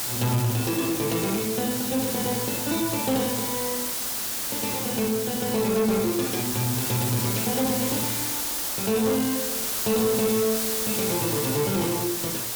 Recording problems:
distortion; soft clipping, signal-to-distortion ratio 11 dB
background hiss; slope -1 dB per octave, SNR 0 dB

